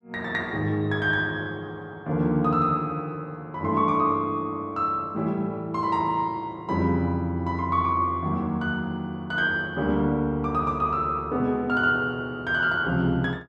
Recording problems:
none

